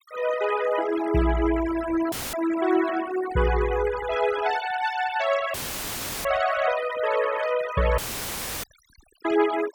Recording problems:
noise reduction artefacts; signal-to-artefact ratio 10 dB
audio cutting out; at 2 s, at 5.5 s for 0.5 s and at 8 s for 0.5 s; filled with static

